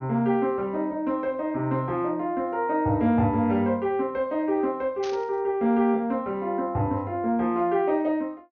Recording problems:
treble missing; nothing above 6.5 kHz
burst of static; at 5 s; peak -10 dB vs average level

